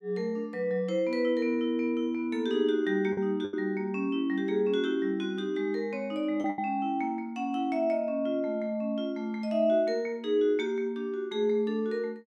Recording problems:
packet loss; 1.9% of the sound replaced, filled with the last packet

